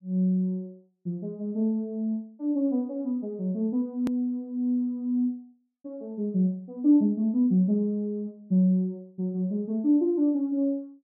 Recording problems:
click at an edit; at 4 s

